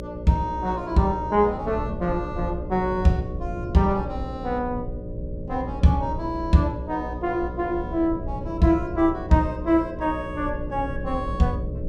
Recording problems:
hum; 60 Hz, harmonics up to 600 Hz, SNR 11 dB
low-frequency rumble; below 110 Hz, SNR 12 dB

